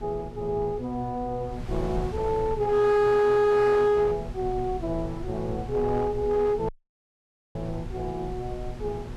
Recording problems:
distortion; hard clipping, signal-to-distortion ratio 11 dB
hum; 60 Hz, harmonics up to 1.3 kHz, SNR 19 dB
wind noise; below 110 Hz, SNR 14 dB
audio cutting out; at 6.5 s for 1 s

